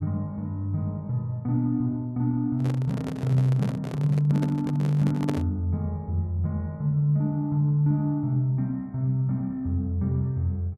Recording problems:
handling noise; from 2.5 to 5.5 s; peak -1 dB vs average level

